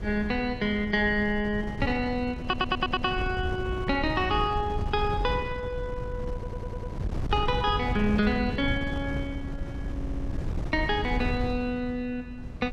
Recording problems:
wind on the microphone; below 140 Hz, SNR 6 dB
audio stuttering; at 2.5 s, at 6.5 s and at 10 s

